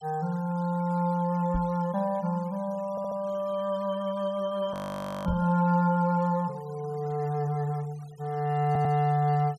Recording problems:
denoising artefacts; signal-to-artefact ratio 25 dB
knock on the microphone; at 1.5 s and at 5.5 s; peak 0 dB vs average level
audio stuttering; at 3 s and at 8.5 s
frozen audio; at 4.5 s for 0.5 s

